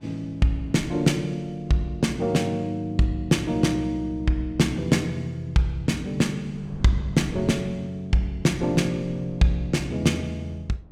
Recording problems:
wind noise; below 220 Hz, SNR 20 dB

